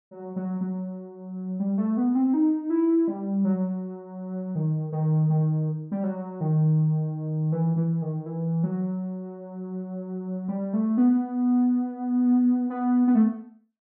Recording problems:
treble cut off; nothing above 4 kHz

